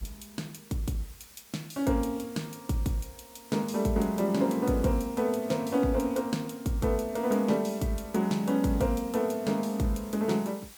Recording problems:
background hiss; slope 0 dB per octave, SNR 21 dB

